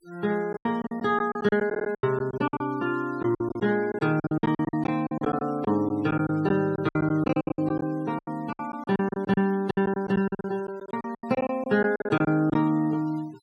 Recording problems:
denoising artefacts; signal-to-artefact ratio 25 dB
packet loss; 18% of the sound replaced, filled with silence
stutter; at 1.5 s

